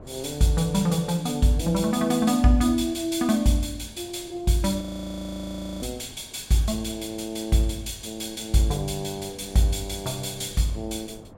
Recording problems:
wind noise; below 470 Hz, SNR 23 dB
frozen audio; at 5 s for 1 s

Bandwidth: 16 kHz